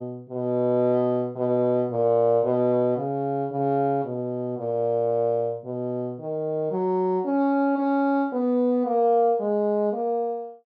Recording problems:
none

